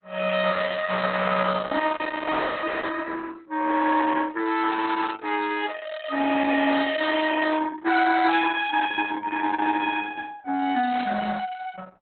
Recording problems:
lossy codec; Opus, log-spectral distance 6 dB, nothing above 4 kHz
static burst; at 5 s and at 11 s; peak -11 dB vs average level

